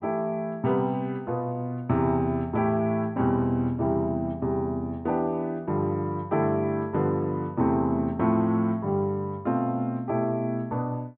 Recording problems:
treble missing; nothing above 4 kHz

